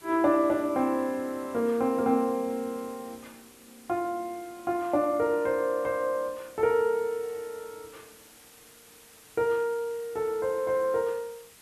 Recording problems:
hiss; slope -1 dB per octave, SNR 23 dB

